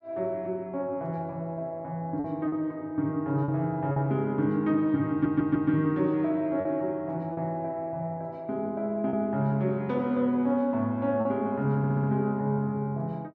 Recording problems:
lost packets; 3% of the sound replaced, filled with repeated pitch periods
stutter; at 5 s and at 12 s

